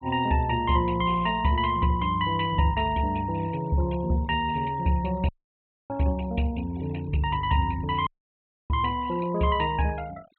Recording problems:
treble missing; nothing above 4 kHz
noise reduction artefacts; signal-to-artefact ratio 22 dB
dropout; at 5.5 s for 0.5 s and at 8 s for 0.5 s

